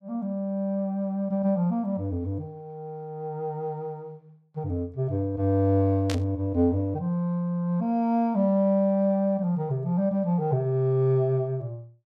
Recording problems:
burst of static; at 6 s; peak -3 dB vs average level

